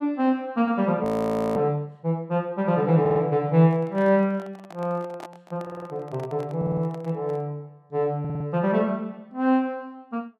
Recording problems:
frozen audio; at 1 s for 0.5 s
stutter; 4 times, first at 3 s
microphone handling noise; from 3.5 to 7.5 s; peak -11 dB vs average level

